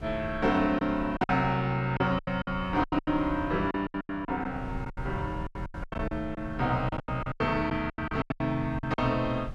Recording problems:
wind noise; below 110 Hz, SNR 13 dB
packet loss; 17% of the sound replaced, filled with silence

